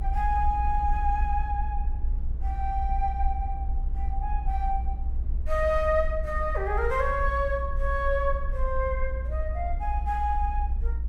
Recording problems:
low-frequency rumble; below 60 Hz, SNR 2 dB

